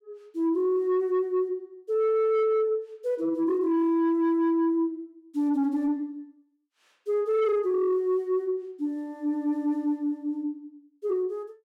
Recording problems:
distortion; soft clipping, signal-to-distortion ratio 11 dB

